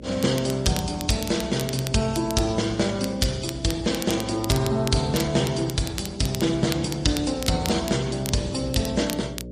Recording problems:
lossy codec; MP3, then MP3, log-spectral distance 3 dB, nothing above 10.4 kHz
hum; 60 Hz, harmonics up to 600 Hz, SNR 15 dB
crackle; vinyl, SNR 12 dB

